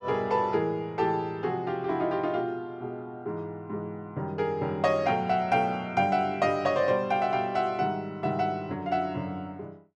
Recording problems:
none

